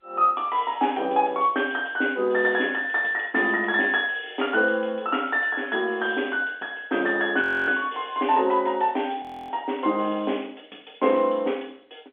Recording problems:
telephone audio; 240 Hz to 3.5 kHz, G.711
frozen audio; at 7.5 s and at 9 s

